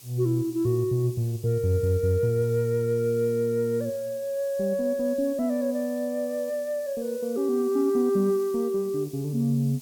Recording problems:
hiss; SNR 21 dB

